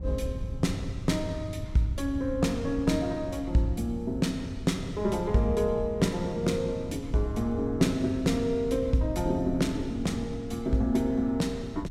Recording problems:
wind on the microphone; below 110 Hz, SNR 11 dB

